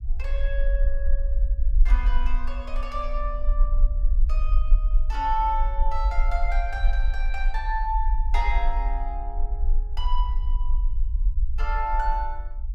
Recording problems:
rumble; below 44 Hz, strongest tone 22 Hz, SNR -4 dB

